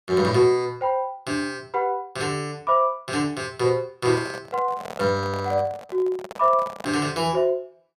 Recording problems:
microphone handling noise; from 4 to 7 s; peak -8 dB vs average level

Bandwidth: 15 kHz